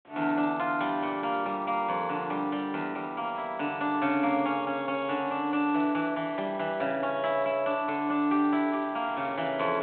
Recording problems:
phone line; 220 Hz to 3.9 kHz, G.726
wind noise; below 1.8 kHz, SNR 24 dB

